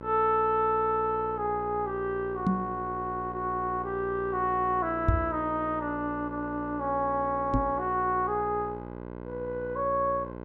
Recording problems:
hum; 60 Hz, harmonics up to 1.6 kHz, SNR 11 dB
microphone bump; at 2.5 s, at 5 s and at 7.5 s; peak +8 dB vs average level

